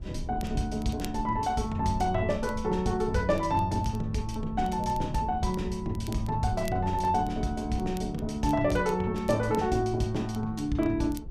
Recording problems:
rumble; below 100 Hz, SNR 12 dB
crackle; vinyl, SNR 23 dB

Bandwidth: 14.5 kHz